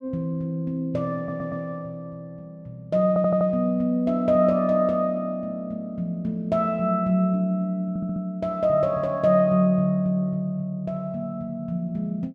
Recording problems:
audio stuttering; at 1 s, at 3 s and at 8 s

